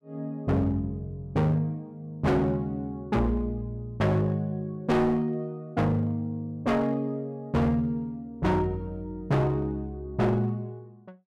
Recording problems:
distortion; hard clipping, signal-to-distortion ratio 7 dB

